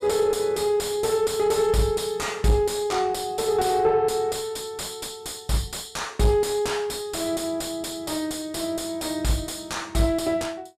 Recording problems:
distortion; soft clipping, signal-to-distortion ratio 6 dB

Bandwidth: 15 kHz